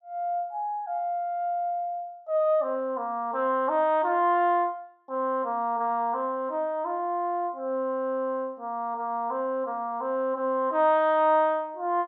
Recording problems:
none

